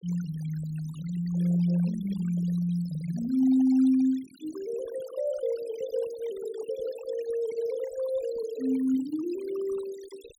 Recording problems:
denoising artefacts; signal-to-artefact ratio 21 dB

